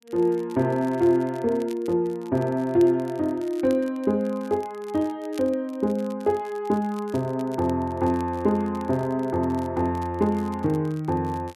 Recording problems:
crackling; vinyl, SNR 26 dB

